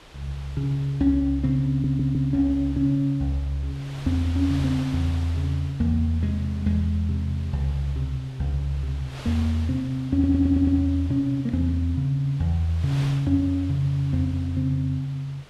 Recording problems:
wind noise; below 3.3 kHz, SNR 19 dB
audio stuttering; at 1.5 s and at 10 s

